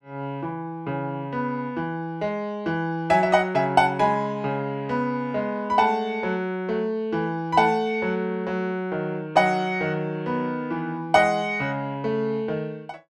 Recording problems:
none

